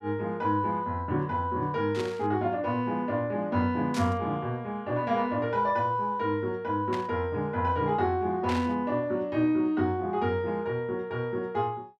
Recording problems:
burst of static; 4 times, first at 2 s; peak -4 dB vs average level

